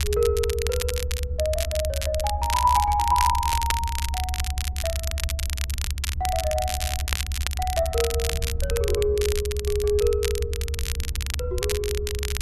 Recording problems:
low-frequency rumble; below 78 Hz, strongest tone 66 Hz, SNR 4 dB
crackling; vinyl, SNR 5 dB

